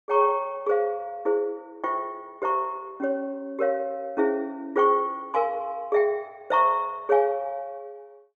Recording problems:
none

